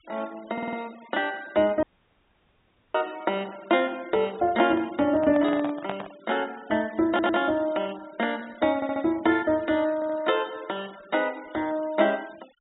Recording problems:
treble missing; nothing above 4 kHz
denoising artefacts; signal-to-artefact ratio 23 dB
stutter; 4 times, first at 0.5 s
dropout; at 2 s for 1 s
microphone handling noise; from 4.5 to 6 s; peak -2 dB vs average level

